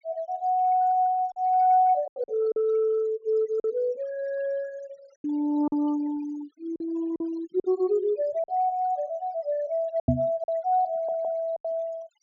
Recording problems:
treble missing; nothing above 7.1 kHz
denoising artefacts; signal-to-artefact ratio 24 dB
lost packets; 6% of the sound replaced, filled with silence
knock on the microphone; at 10 s; peak +7 dB vs average level
audio stuttering; at 11 s

